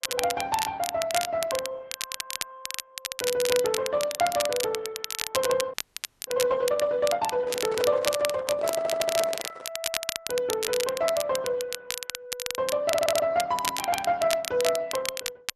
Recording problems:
codec artefacts; Opus, then MP3, log-spectral distance 2 dB
crackling; vinyl, SNR 5 dB
audio stuttering; at 2 s, at 8.5 s and at 13 s
audio freezing; at 5.5 s for 0.5 s
microphone handling noise; from 7.5 to 9.5 s; peak -3 dB vs average level

